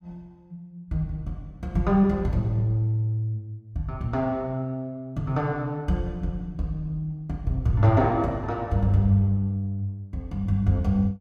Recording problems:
none

